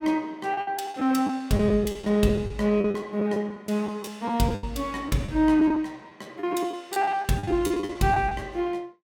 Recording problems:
packet loss; 12% of the sound replaced, filled with the last packet

